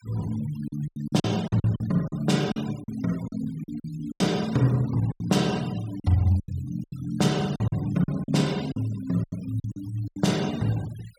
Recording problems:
noise reduction artefacts; signal-to-artefact ratio 19 dB
packet loss; 12% of the sound replaced, filled with silence

